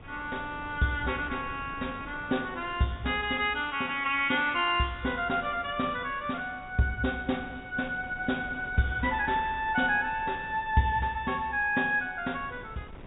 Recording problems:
treble missing; nothing above 4 kHz
wind on the microphone; below 560 Hz, SNR 19 dB

